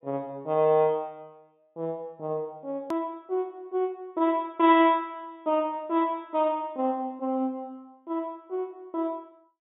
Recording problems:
treble cut off; nothing above 4 kHz
edit click; at 3 s

